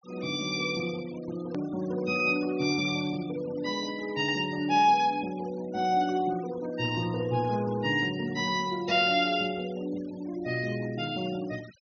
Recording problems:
treble cut off; nothing above 6.5 kHz
noise reduction artefacts; signal-to-artefact ratio 21 dB
edit click; at 1.5 s

